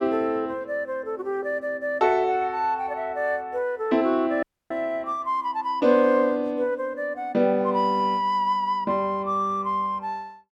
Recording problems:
dropout; at 4.5 s

